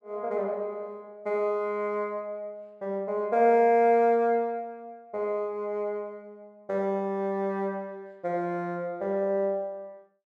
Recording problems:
none

